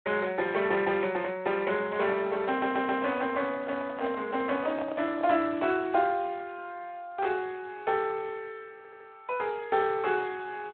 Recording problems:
telephone audio; 240 Hz to 3.6 kHz, Speex
handling noise; from 2 to 5.5 s; peak -4 dB vs average level
stutter; at 2.5 s and at 9 s

